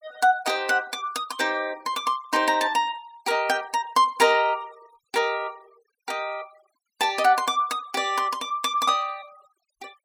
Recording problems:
denoising artefacts; signal-to-artefact ratio 24 dB

